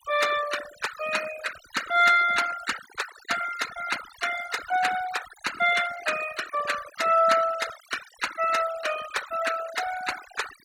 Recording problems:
noise reduction artefacts; signal-to-artefact ratio 11 dB

